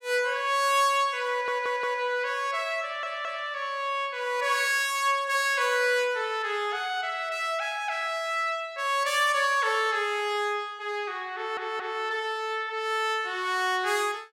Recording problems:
audio stuttering; at 1.5 s, at 3 s and at 11 s

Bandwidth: 16.5 kHz